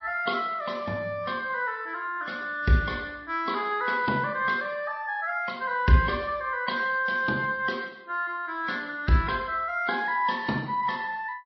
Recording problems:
codec artefacts; MP3, then MP3, log-spectral distance 2 dB, nothing above 5.2 kHz

